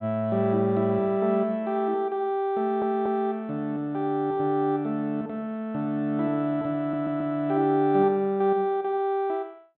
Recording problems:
treble missing; nothing above 4 kHz
audio stuttering; at 2.5 s and at 7 s

